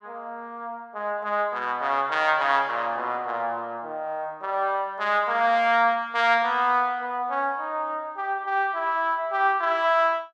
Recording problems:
none

